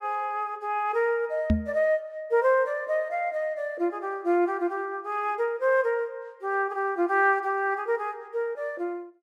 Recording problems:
knock on the microphone; at 1.5 s; peak +7 dB vs average level

